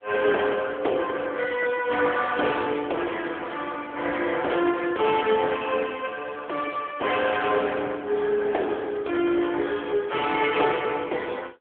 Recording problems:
telephone audio; 300 Hz to 3.4 kHz, AMR-NB

